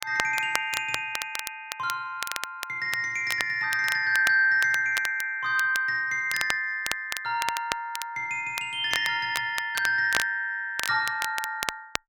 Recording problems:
crackle; vinyl, SNR 9 dB

